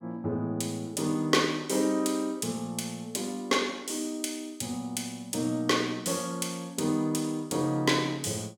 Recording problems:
none

